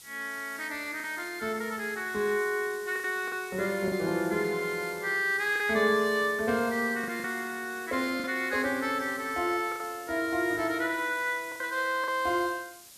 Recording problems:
background hiss; SNR 17 dB
lost packets; 4% of the sound replaced, filled with the last packet

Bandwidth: 14 kHz